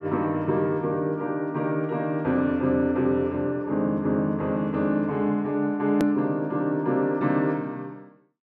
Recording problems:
click at an edit; at 6 s

